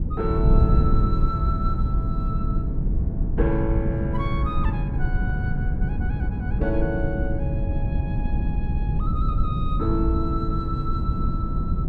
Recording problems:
wind noise; below 130 Hz, SNR -6 dB

